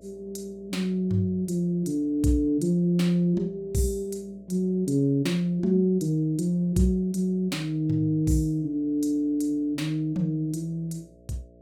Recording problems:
hum; 60 Hz, harmonics up to 660 Hz, SNR 28 dB

